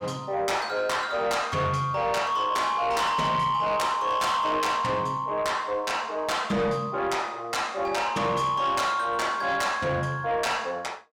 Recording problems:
distorted audio; soft clipping, signal-to-distortion ratio 10 dB

